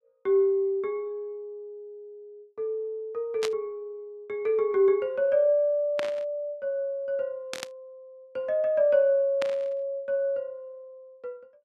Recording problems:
burst of static; 4 times, first at 3.5 s; peak -2 dB vs average level

